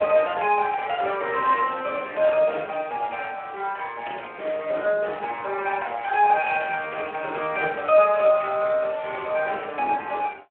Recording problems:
telephone audio; 320 Hz to 3 kHz, Speex

